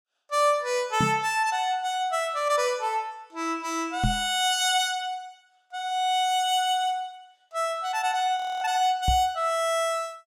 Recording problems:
knock on the microphone; at 1 s, at 4 s and at 9 s; peak +3 dB vs average level
audio freezing; at 8.5 s

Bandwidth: 16.5 kHz